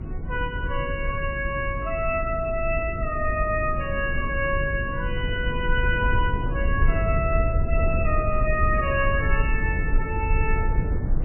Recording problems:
lossy codec; MP3, log-spectral distance 2 dB, nothing above 2.7 kHz
hum; 50 Hz, harmonics up to 350 Hz, SNR 12 dB
rumble; below 82 Hz, SNR 2 dB

